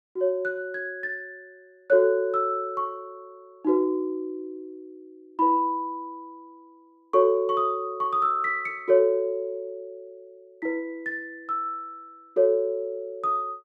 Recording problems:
none

